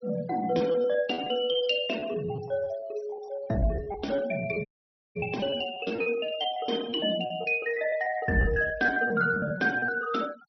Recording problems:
treble missing; nothing above 5.9 kHz
denoising artefacts; signal-to-artefact ratio 20 dB
lost packets; 15% of the sound replaced, filled with repeated pitch periods
audio cutting out; at 4.5 s for 0.5 s

